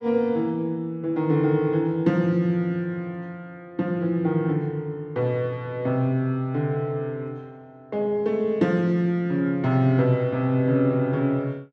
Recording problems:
none

